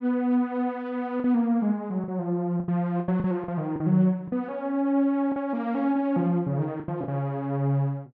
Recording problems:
packet loss; 7% of the sound replaced, filled with the last packet

